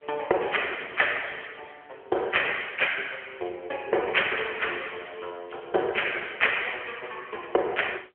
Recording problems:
telephone audio; 320 Hz to 3.3 kHz, AMR-NB

